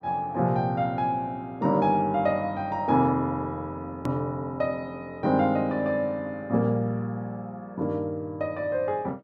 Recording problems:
hard cut with a click; at 4 s

